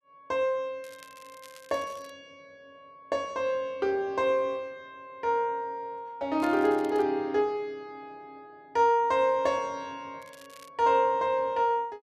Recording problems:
crackling; from 1 to 2 s, at 6.5 s and at 10 s; loose cable, SNR 25 dB

